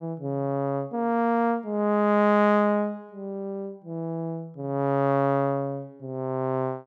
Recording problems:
none

